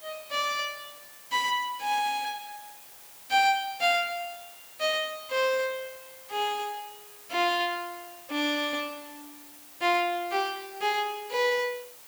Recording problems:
hiss; slope -1 dB per octave, SNR 18 dB

